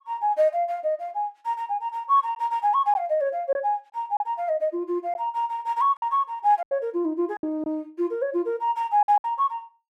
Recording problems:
packet loss; 4% of the sound replaced, filled with silence

